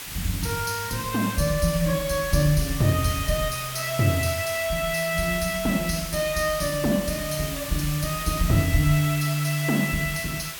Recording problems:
hiss; slope +1 dB per octave, SNR 8 dB

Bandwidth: 17.5 kHz